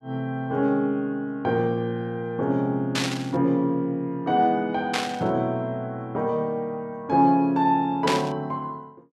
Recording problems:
burst of static; at 3 s, at 5 s and at 8 s; peak +3 dB vs average level

